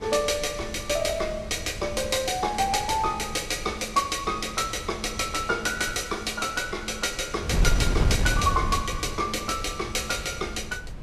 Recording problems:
wind noise; below 130 Hz, SNR 7 dB

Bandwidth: 13.5 kHz